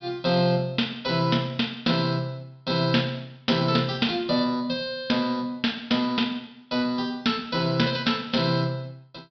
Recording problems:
low-pass filter; nothing above 5.5 kHz

